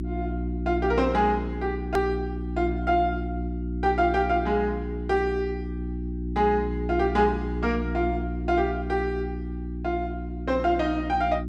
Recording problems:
mains hum; 60 Hz, harmonics up to 360 Hz, SNR 5 dB
hard cut with a click; at 2 s

